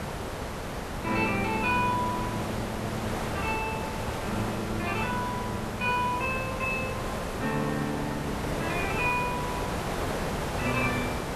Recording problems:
background hiss; SNR 2 dB

